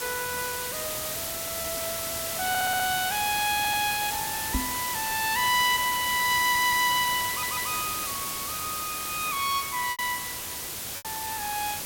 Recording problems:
hiss; slope -1 dB per octave, SNR 2 dB
lost packets; 1.8% of the sound replaced, filled with repeated pitch periods
stutter; 4 times, first at 2.5 s
knock on the microphone; at 4.5 s; peak +2 dB vs average level

